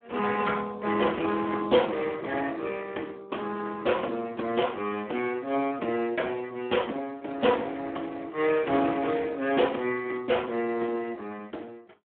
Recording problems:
phone line; 260 Hz to 3.4 kHz, Speex

